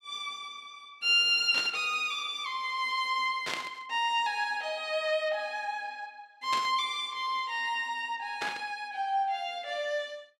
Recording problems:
static burst; 4 times, first at 1.5 s; peak -1 dB vs average level

